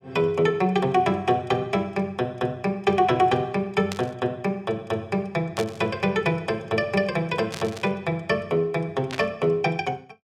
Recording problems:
burst of static; 4 times, first at 4 s; peak -4 dB vs average level

